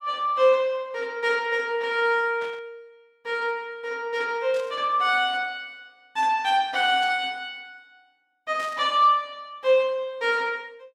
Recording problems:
burst of static; 4 times, first at 2.5 s; peak -14 dB vs average level

